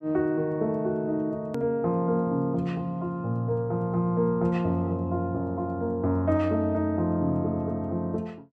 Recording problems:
hard cut with a click; at 1.5 s

